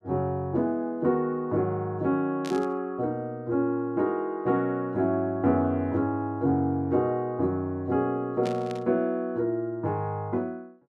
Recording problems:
static burst; at 2.5 s and at 8.5 s; peak -8 dB vs average level

